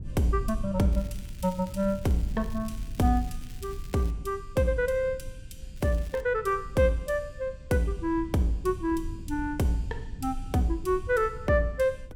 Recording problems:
rumble; below 88 Hz, SNR 12 dB
crackling; from 1 to 4 s and at 6 s; loose cable, SNR 24 dB

